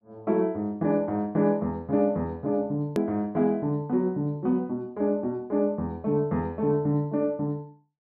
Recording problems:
click at an edit; at 3 s

